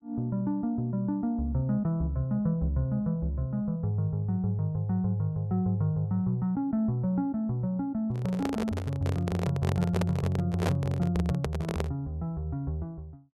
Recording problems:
microphone handling noise; from 8 to 12 s; peak +3 dB vs average level

